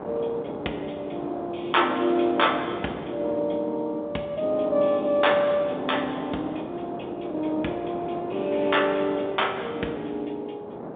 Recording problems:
telephone audio; 190 Hz to 3.6 kHz, G.711
wind noise; below 710 Hz, SNR 10 dB

